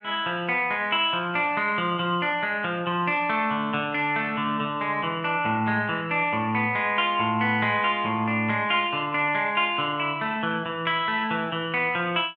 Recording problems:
none

